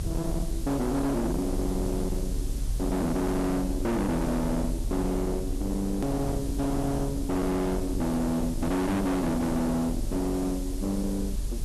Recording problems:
distortion; hard clipping, signal-to-distortion ratio 6 dB
background hiss; SNR 15 dB
rumble; below 180 Hz, SNR 5 dB
edit click; at 6 s

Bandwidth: 12.5 kHz